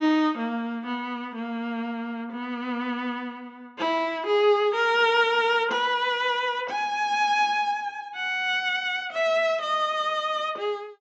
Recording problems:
low-pass filter; nothing above 8 kHz

